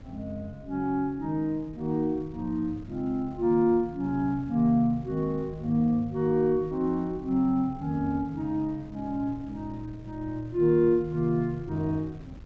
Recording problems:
low-pass filter; nothing above 8 kHz
wind noise; below 180 Hz, SNR 20 dB

